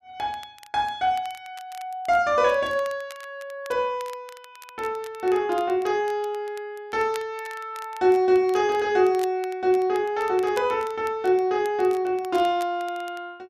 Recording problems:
crackle; vinyl, SNR 23 dB

